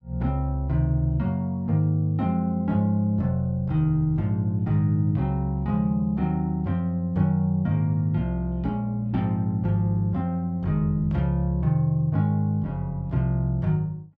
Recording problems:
none

